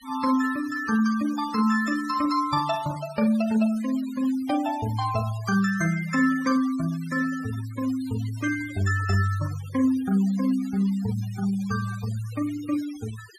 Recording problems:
noise reduction artefacts; signal-to-artefact ratio 18 dB

